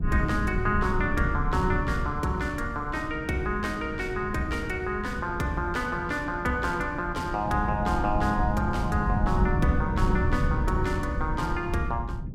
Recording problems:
wind noise; below 140 Hz, SNR 3 dB

